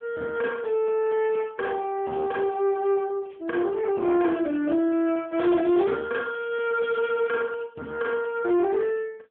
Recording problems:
telephone audio; 150 Hz to 3.5 kHz, AMR-NB
distorted audio; soft clipping, signal-to-distortion ratio 11 dB

